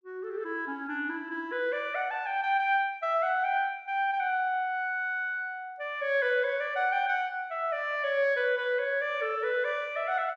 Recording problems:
none

